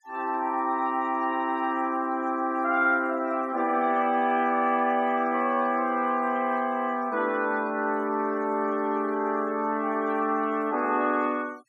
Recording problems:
noise reduction artefacts; signal-to-artefact ratio 26 dB

